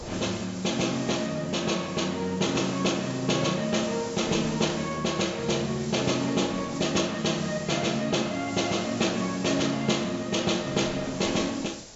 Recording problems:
treble cut off; nothing above 8 kHz
background hiss; SNR 16 dB
wind on the microphone; below 710 Hz, SNR 23 dB

